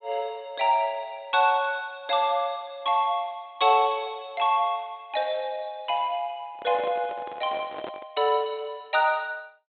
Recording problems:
low-pass filter; nothing above 4 kHz
handling noise; from 6.5 to 8 s; peak -7 dB vs average level

